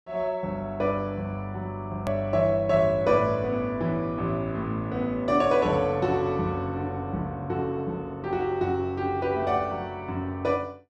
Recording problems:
edit click; at 2 s

